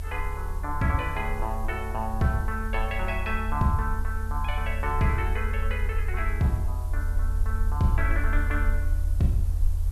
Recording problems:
background hiss; SNR 21 dB
low-frequency rumble; below 80 Hz, SNR 1 dB

